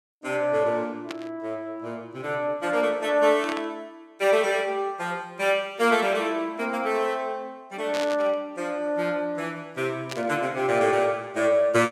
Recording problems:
burst of static; 4 times, first at 1 s; peak -4 dB vs average level

